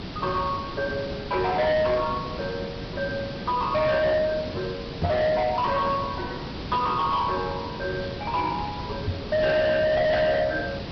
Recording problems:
low-pass filter; nothing above 5.2 kHz
lossy compression; Speex, log-spectral distance 3 dB
distortion; soft clipping, signal-to-distortion ratio 6 dB
hiss; SNR 9 dB
microphone thump; at 5 s and at 9 s; peak +1 dB vs average level

